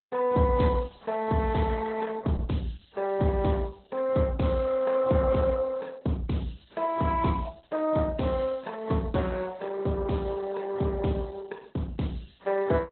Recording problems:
codec artefacts; AAC, then Opus, log-spectral distance 4 dB, nothing above 4 kHz

